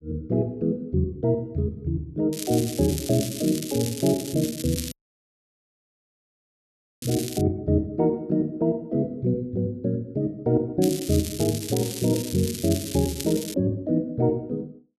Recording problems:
crackling; from 2.5 to 7.5 s and from 11 to 14 s; loose cable, SNR 9 dB
dropout; at 5 s for 2 s

